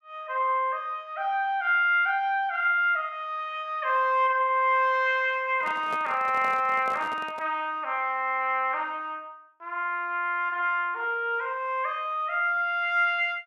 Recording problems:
handling noise; from 5.5 to 7.5 s; peak -9 dB vs average level

